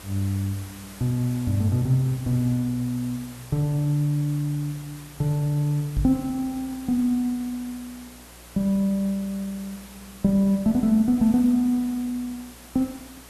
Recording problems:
electrical hum; 60 Hz, harmonics up to 600 Hz, SNR 27 dB
hiss; slope -2 dB per octave, SNR 20 dB
microphone thump; at 6 s; peak +2 dB vs average level

